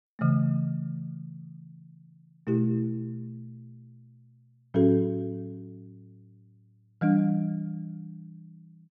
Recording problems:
none

